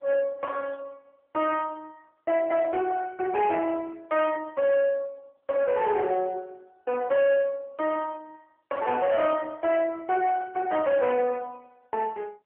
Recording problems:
telephone audio; 300 Hz to 3.1 kHz, AMR-NB
distorted audio; soft clipping, signal-to-distortion ratio 12 dB

